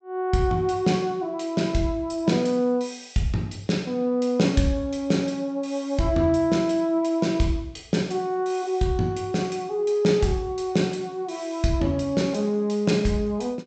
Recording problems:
treble cut off; nothing above 8 kHz

